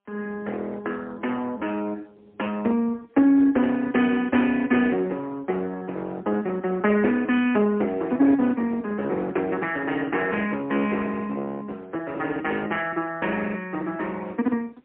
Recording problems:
phone line; 240 Hz to 3 kHz, AMR-NB, then MP3
distorted audio; hard clipping, uneven, signal-to-distortion ratio 20 dB

